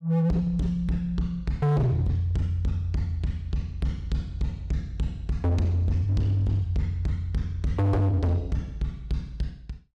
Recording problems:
distorted audio; hard clipping, signal-to-distortion ratio 6 dB

